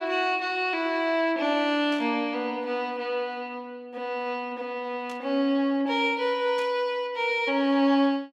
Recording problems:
static burst; at 2 s, at 5 s and at 6.5 s; peak -14 dB vs average level

